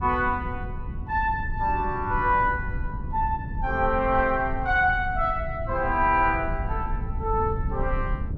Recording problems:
low-frequency rumble; below 96 Hz, SNR 8 dB

